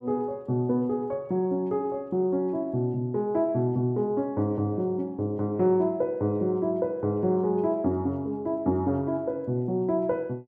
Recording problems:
none

